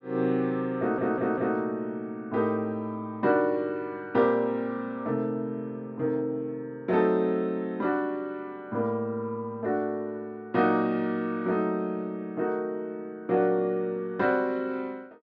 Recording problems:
stutter; at 1 s

